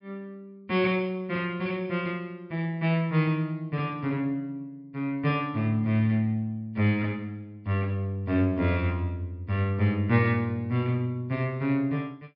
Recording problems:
low-pass filter; nothing above 5.5 kHz

